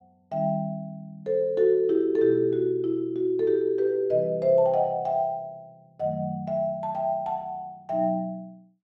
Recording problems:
none

